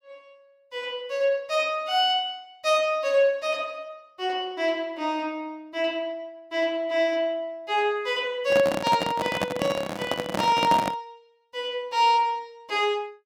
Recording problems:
handling noise; from 8.5 to 11 s; peak +2 dB vs average level

